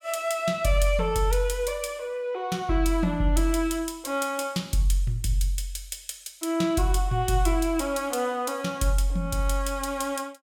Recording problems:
none

